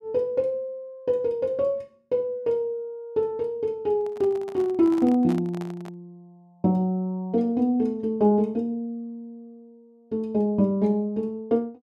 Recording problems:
microphone handling noise; from 4 to 6 s; peak -9 dB vs average level

